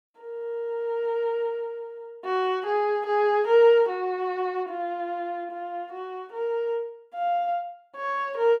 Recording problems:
none

